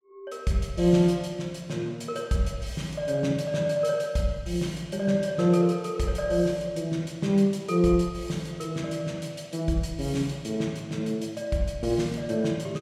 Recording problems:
none

